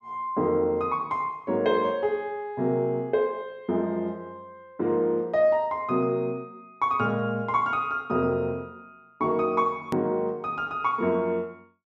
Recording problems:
hard cut with a click; at 10 s

